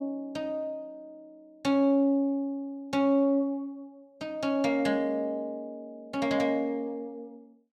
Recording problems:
none

